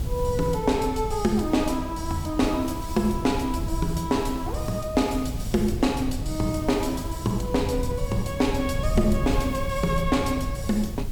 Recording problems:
hiss; slope -1 dB per octave, SNR 21 dB
wind on the microphone; below 120 Hz, SNR 6 dB

